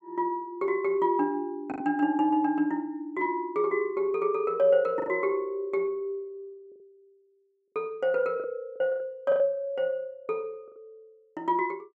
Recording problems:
lost packets; 5% of the sound replaced, filled with the last packet

